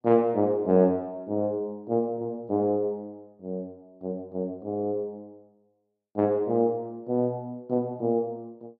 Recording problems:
none

